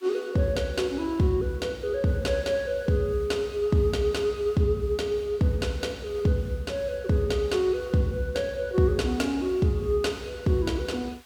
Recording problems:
hiss; SNR 28 dB

